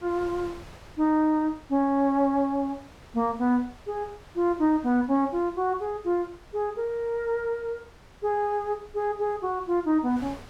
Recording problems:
wind on the microphone; below 1.3 kHz, SNR 23 dB

